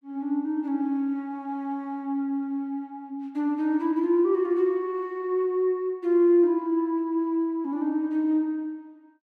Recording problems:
none

